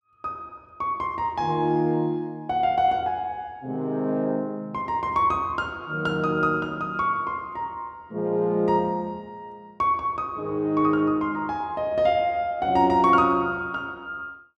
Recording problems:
none

